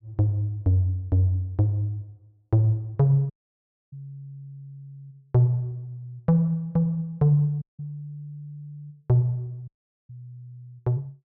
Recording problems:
audio cutting out; at 3.5 s for 0.5 s, at 7.5 s and at 9.5 s

